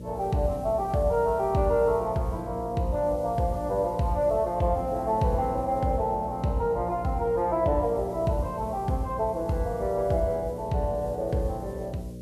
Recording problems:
hum; 60 Hz, harmonics up to 600 Hz, SNR 13 dB
background hiss; slope +2 dB per octave, SNR 29 dB

